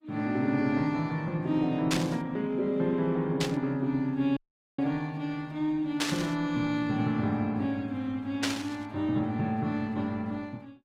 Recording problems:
codec artefacts; Opus, log-spectral distance 2 dB
static burst; 4 times, first at 2 s; peak +5 dB vs average level
audio cutting out; at 4.5 s

